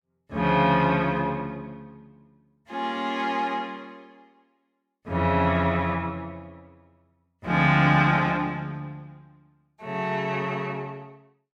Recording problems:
none

